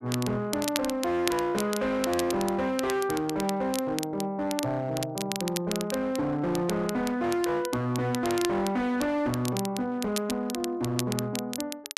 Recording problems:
distortion; hard clipping, signal-to-distortion ratio 10 dB
crackling; vinyl, SNR 9 dB

